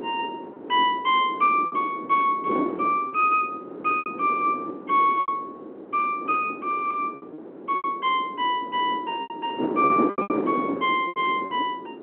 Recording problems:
phone line; 260 Hz to 3.3 kHz, G.711
wind noise; below 480 Hz, SNR 9 dB
packet loss; 9% of the sound replaced, filled with repeated pitch periods

